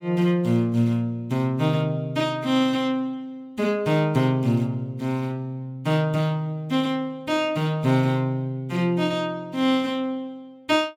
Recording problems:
none

